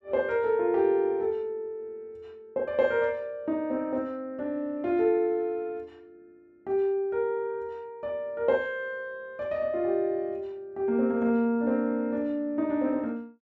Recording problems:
none

